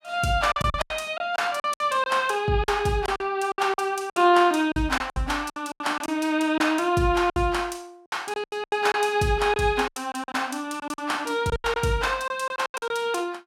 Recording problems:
packet loss; 14% of the sound replaced, filled with silence

